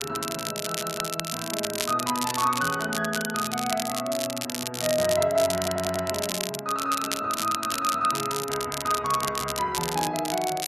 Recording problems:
crackle; vinyl, SNR 4 dB
stutter; at 0.5 s and at 5.5 s

